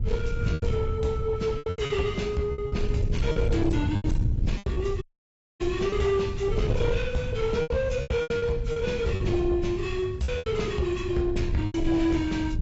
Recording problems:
codec artefacts; AAC, log-spectral distance 2 dB, nothing above 7.6 kHz
distorted audio; soft clipping, signal-to-distortion ratio 11 dB
hum; 60 Hz, harmonics up to 840 Hz, SNR 20 dB
low-frequency rumble; below 110 Hz, SNR 4 dB
lost packets; 10% of the sound replaced, filled with repeated pitch periods
audio cutting out; at 5 s for 0.5 s

